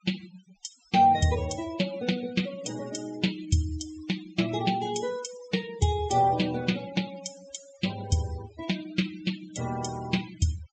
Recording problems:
treble cut off; nothing above 8 kHz
noise reduction artefacts; signal-to-artefact ratio 16 dB

